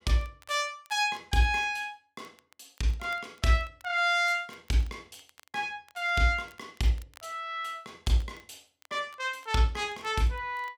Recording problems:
crackling; vinyl, SNR 30 dB

